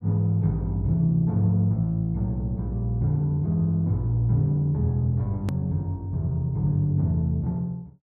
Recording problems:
click at an edit; at 5.5 s

